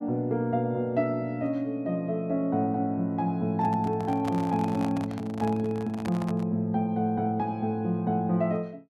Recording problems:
microphone handling noise; from 3.5 to 6.5 s; peak -3 dB vs average level

